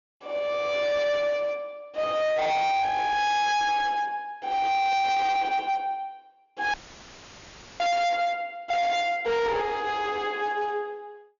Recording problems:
treble missing; nothing above 7 kHz
distorted audio; hard clipping, uneven, signal-to-distortion ratio 6 dB
audio cutting out; at 6.5 s for 1 s; filled with static

